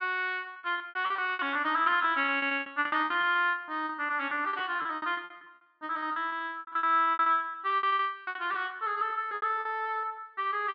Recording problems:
treble cut off; nothing above 5.5 kHz
packet loss; 22% of the sound replaced, filled with repeated pitch periods

